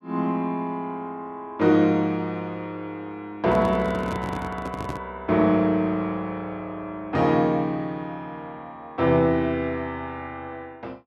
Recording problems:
microphone handling noise; from 3.5 to 5 s; peak -4 dB vs average level

